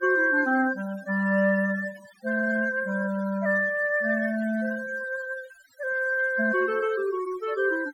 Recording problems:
noise reduction artefacts; signal-to-artefact ratio 20 dB

